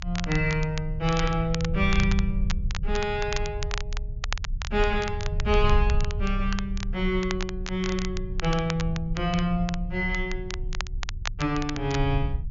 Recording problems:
low-pass filter; nothing above 7.1 kHz
rumble; below 72 Hz, strongest tone 32 Hz, SNR 4 dB
crackle; vinyl, SNR 10 dB

